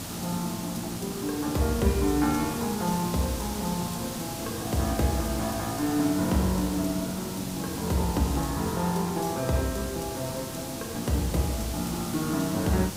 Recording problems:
background hiss; SNR 6 dB

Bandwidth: 15.5 kHz